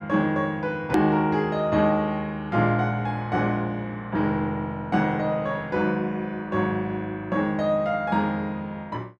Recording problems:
click at an edit; at 1 s

